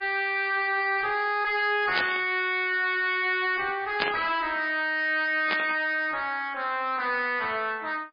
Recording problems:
codec artefacts; MP3, log-spectral distance 3 dB, nothing above 5 kHz
distortion; soft clipping, signal-to-distortion ratio 6 dB
static burst; at 2 s, at 4 s and at 5.5 s; peak +3 dB vs average level

